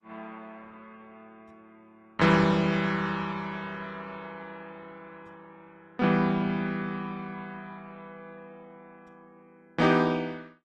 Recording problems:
codec artefacts; Opus, log-spectral distance 3 dB, nothing above 12 kHz

